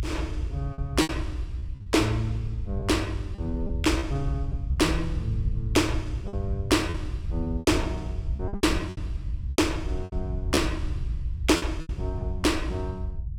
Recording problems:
rumble; below 82 Hz, SNR 4 dB
lost packets; 8% of the sound replaced, filled with repeated pitch periods

